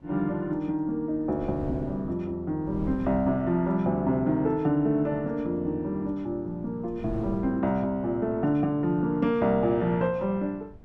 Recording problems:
wind on the microphone; below 210 Hz, SNR 17 dB

